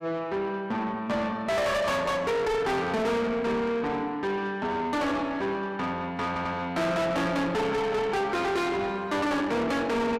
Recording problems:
distorted audio; soft clipping, signal-to-distortion ratio 6 dB
audio stuttering; at 6.5 s

